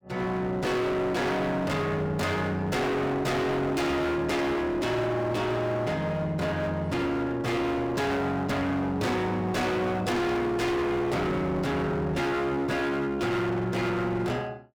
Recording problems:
distortion; hard clipping, uneven, signal-to-distortion ratio 5 dB

